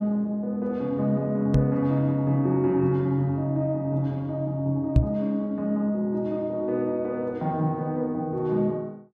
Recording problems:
microphone bump; at 1.5 s and at 5 s; peak +10 dB vs average level

